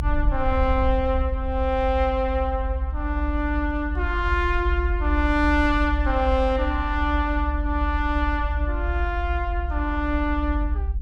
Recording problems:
rumble; below 66 Hz, strongest tone 48 Hz, SNR 2 dB

